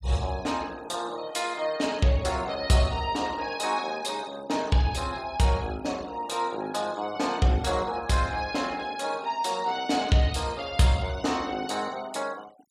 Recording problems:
denoising artefacts; signal-to-artefact ratio 21 dB

